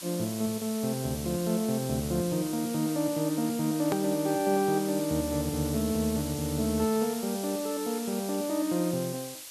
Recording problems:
background hiss; slope +2 dB per octave, SNR 10 dB
hard cut with a click; at 4 s

